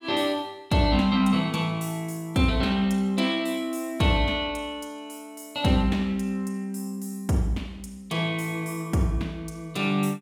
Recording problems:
none

